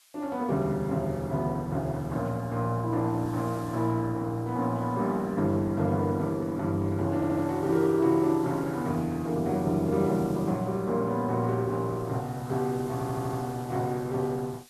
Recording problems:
lossy compression; Opus, log-spectral distance 2 dB
hiss; SNR 25 dB
stutter; at 7 s and at 13 s

